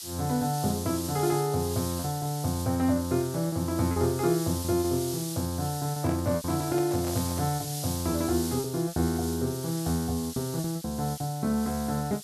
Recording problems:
background hiss; SNR 9 dB
lost packets; 6% of the sound replaced, filled with repeated pitch periods
handling noise; from 6 to 7.5 s; peak -8 dB vs average level

